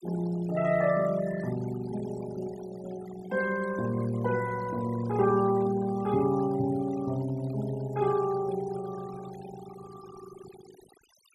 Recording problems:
denoising artefacts; signal-to-artefact ratio 17 dB

